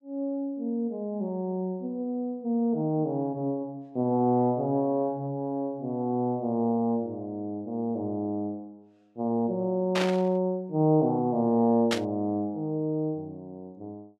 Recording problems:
static burst; at 10 s and at 12 s; peak +3 dB vs average level

